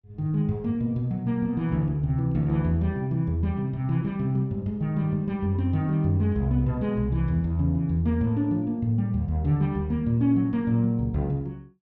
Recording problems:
none

